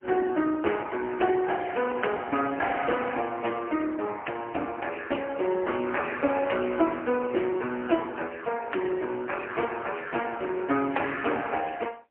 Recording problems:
phone line; 240 Hz to 3 kHz, AMR-NB, then MP3

